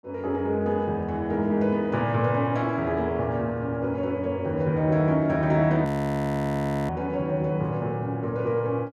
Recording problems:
audio freezing; at 6 s for 1 s

